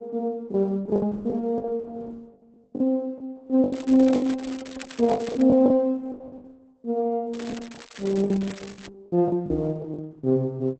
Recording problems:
lossy codec; Opus, log-spectral distance 3 dB
lost packets; 12% of the sound replaced, filled with the last packet
crackling; from 3.5 to 5.5 s and from 7.5 to 9 s; loose cable, SNR 20 dB
knock on the microphone; at 9.5 s; peak -4 dB vs average level

